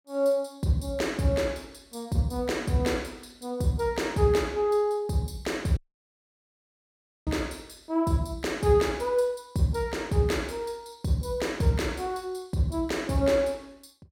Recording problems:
audio cutting out; at 6 s for 1.5 s

